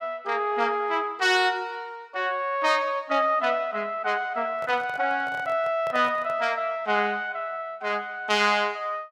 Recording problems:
microphone handling noise; from 4.5 to 6.5 s; peak -9 dB vs average level

